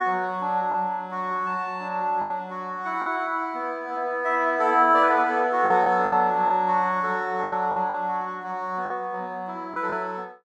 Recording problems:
lost packets; 5% of the sound replaced, filled with the last packet

